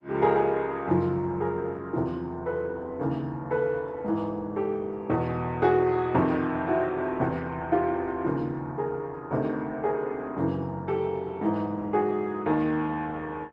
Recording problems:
lossy codec; Opus, log-spectral distance 2 dB

